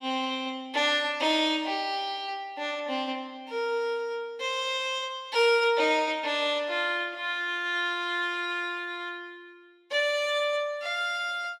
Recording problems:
none

